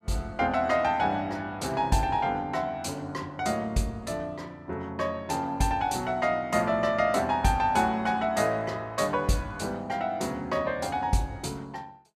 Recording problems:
none

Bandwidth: 14.5 kHz